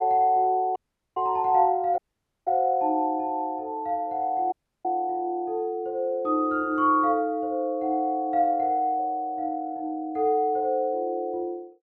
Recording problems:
audio cutting out; at 1 s, at 2 s and at 4.5 s

